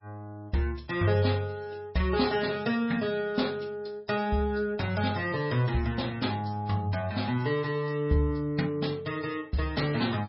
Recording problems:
lossy codec; MP3, log-spectral distance 3 dB, nothing above 5.3 kHz

